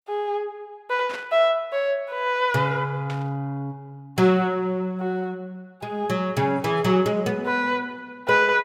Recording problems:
burst of static; at 1 s and at 3 s; peak -8 dB vs average level

